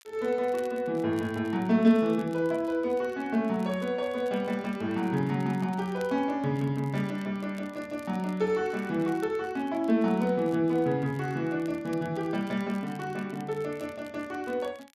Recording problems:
crackle; vinyl, SNR 27 dB

